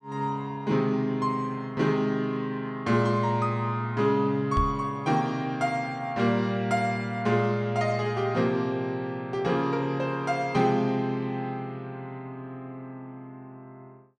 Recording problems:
knock on the microphone; at 4.5 s; peak +1 dB vs average level

